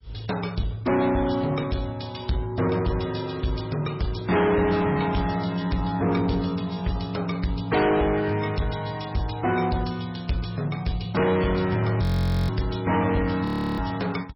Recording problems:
lossy compression; MP3, log-spectral distance 5 dB
distorted audio; soft clipping, signal-to-distortion ratio 7 dB
audio freezing; at 12 s and at 13 s

